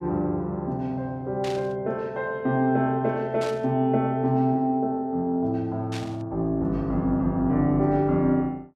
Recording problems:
burst of static; at 1.5 s, at 3.5 s and at 6 s; peak -8 dB vs average level

